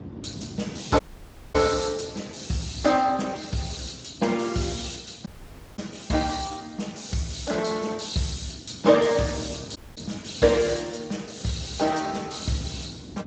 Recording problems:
codec artefacts; Speex, log-spectral distance 8 dB, nothing above 7.8 kHz
wind on the microphone; below 320 Hz, SNR 17 dB
dropout; at 1 s for 0.5 s, at 5.5 s for 0.5 s and at 10 s

